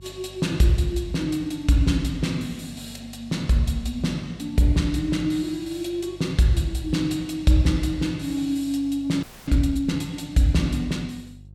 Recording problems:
hum; 50 Hz, harmonics up to 350 Hz, SNR 22 dB
frozen audio; at 9 s

